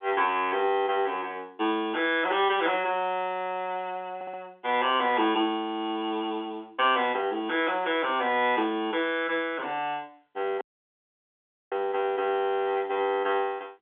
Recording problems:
phone line; 190 Hz to 3.6 kHz, G.711
stutter; at 4 s
audio cutting out; at 11 s for 1 s

